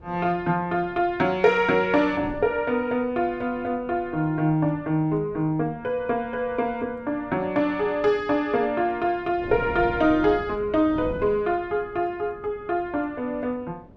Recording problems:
wind on the microphone; below 390 Hz, SNR 19 dB

